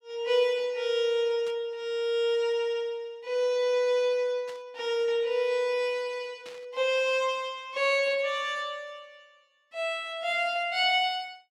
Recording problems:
static burst; at 1.5 s, at 4.5 s and at 6.5 s; peak -15 dB vs average level

